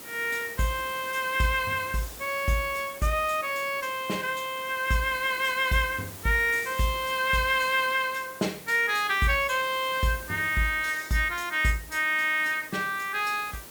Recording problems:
background hiss; slope -3 dB per octave, SNR 15 dB

